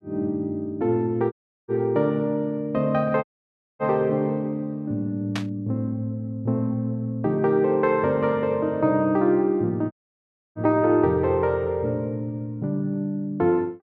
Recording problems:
audio cutting out; at 1.5 s, at 3 s for 0.5 s and at 10 s for 0.5 s
burst of static; at 5.5 s; peak -3 dB vs average level

